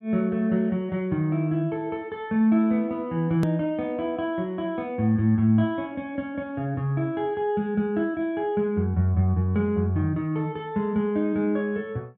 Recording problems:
edit click; at 3.5 s

